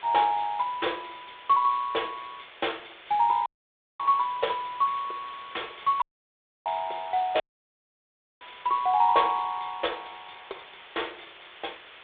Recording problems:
phone line; 320 Hz to 3.6 kHz, G.726
background hiss; SNR 19 dB
audio cutting out; at 3.5 s for 0.5 s, at 6 s for 0.5 s and at 7.5 s for 1 s

